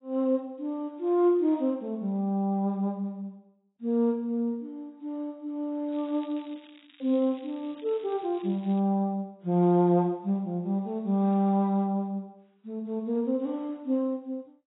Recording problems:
codec artefacts; AAC, log-spectral distance 2 dB
crackle; from 6 to 9 s; loose cable, SNR 27 dB

